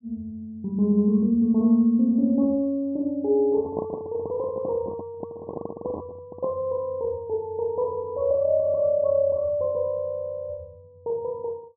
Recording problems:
handling noise; from 3.5 to 6.5 s; peak -2 dB vs average level

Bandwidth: 1 kHz